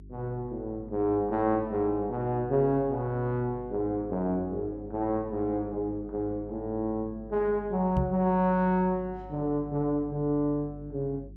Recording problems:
mains hum; 50 Hz, harmonics up to 400 Hz, SNR 18 dB
microphone thump; at 8 s; peak +4 dB vs average level

